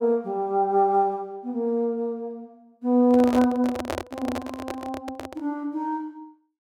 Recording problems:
handling noise; from 3 to 5.5 s; peak -1 dB vs average level

